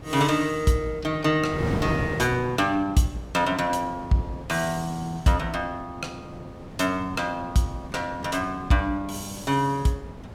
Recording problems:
wind on the microphone; below 470 Hz, SNR 11 dB

